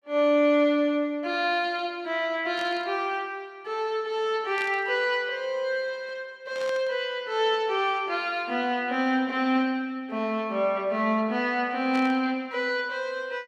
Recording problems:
burst of static; 4 times, first at 2.5 s; peak -8 dB vs average level

